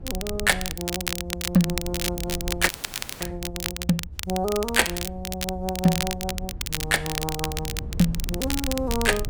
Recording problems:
rumble; below 78 Hz, SNR 10 dB
crackle; vinyl, SNR 4 dB
audio freezing; at 2.5 s for 0.5 s

